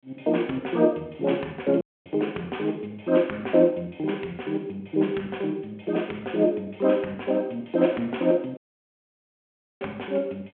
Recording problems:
phone line; 280 Hz to 3.2 kHz, G.726
audio cutting out; at 2 s and at 8.5 s for 1 s

